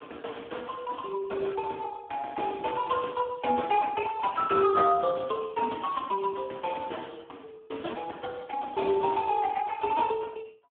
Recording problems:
telephone audio; 220 Hz to 2.4 kHz, Speex

